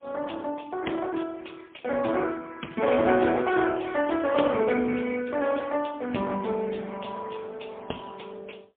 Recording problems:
phone line; 260 Hz to 3.4 kHz, AMR-NB, then MP3

